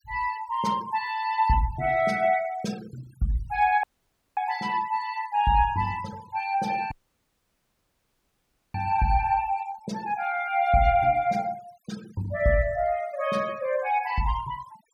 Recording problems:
denoising artefacts; signal-to-artefact ratio 21 dB
dropout; at 4 s for 0.5 s and at 7 s for 2 s

